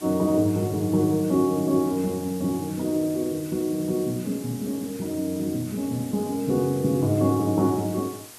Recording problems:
electrical hum; 60 Hz, harmonics up to 1.9 kHz, SNR 30 dB
background hiss; slope 0 dB per octave, SNR 17 dB

